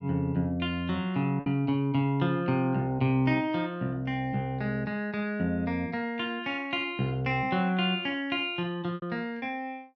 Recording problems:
lost packets; 1.8% of the sound replaced, filled with repeated pitch periods

